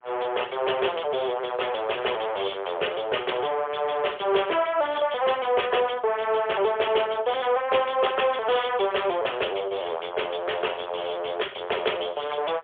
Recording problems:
phone line; 340 Hz to 3.5 kHz, AMR-NB, then MP3

